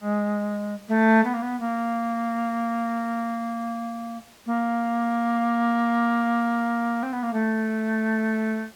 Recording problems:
hiss; slope -2 dB per octave, SNR 26 dB

